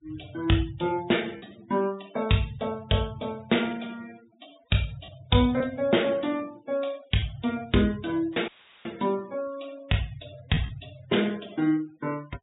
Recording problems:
low-pass filter; nothing above 4 kHz
denoising artefacts; signal-to-artefact ratio 22 dB
lost packets; 1.4% of the sound replaced, filled with repeated pitch periods
dropout; at 8.5 s; filled with static

